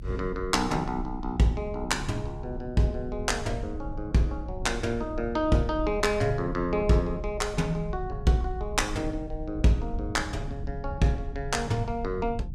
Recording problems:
rumble; below 76 Hz, strongest tone 34 Hz, SNR 10 dB

